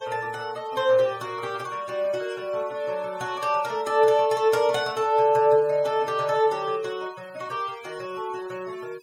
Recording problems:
denoising artefacts; signal-to-artefact ratio 23 dB

